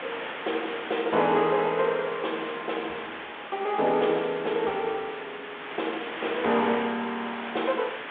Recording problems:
telephone audio; 260 Hz to 3.5 kHz, G.726
background hiss; SNR 9 dB

